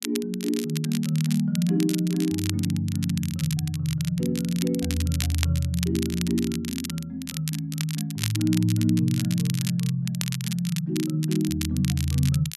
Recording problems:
crackle; vinyl, SNR 10 dB

